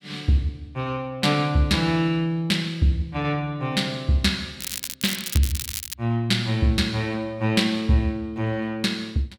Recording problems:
crackle; from 4.5 to 6 s; loose cable, SNR 7 dB

